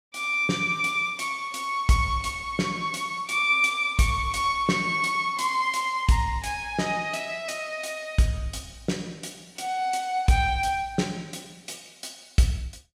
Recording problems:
none

